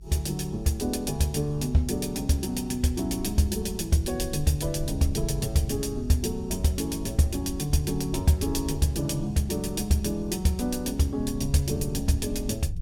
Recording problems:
rumble; below 88 Hz, SNR 12 dB

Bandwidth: 17 kHz